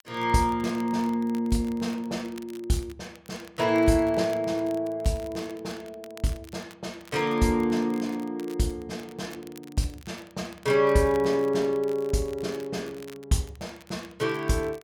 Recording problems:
crackling; vinyl, SNR 24 dB

